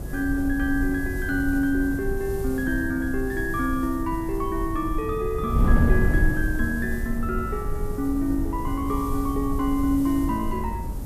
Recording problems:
hiss; SNR 20 dB
wind noise; below 110 Hz, SNR 3 dB

